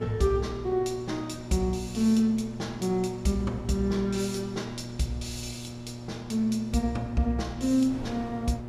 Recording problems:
hum; 60 Hz, harmonics up to 960 Hz, SNR 11 dB
wind noise; below 490 Hz, SNR 20 dB

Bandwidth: 14.5 kHz